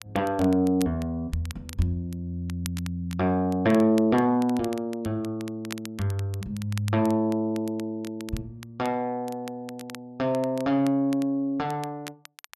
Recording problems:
crackle; vinyl, SNR 19 dB

